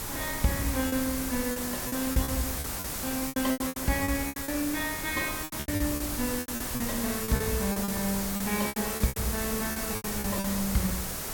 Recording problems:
electrical hum; 50 Hz, harmonics up to 400 Hz, SNR 20 dB
background hiss; slope -3 dB per octave, SNR 1 dB
rumble; below 120 Hz, SNR 14 dB
lost packets; 15% of the sound replaced, filled with repeated pitch periods

